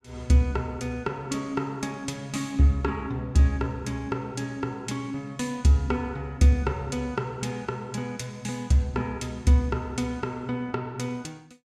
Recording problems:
none

